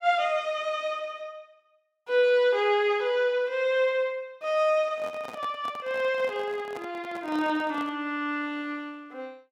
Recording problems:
microphone handling noise; from 5 to 8 s; peak -10 dB vs average level

